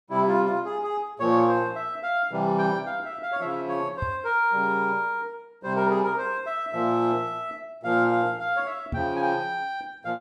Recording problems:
microphone thump; at 4 s and at 9 s; peak -1 dB vs average level

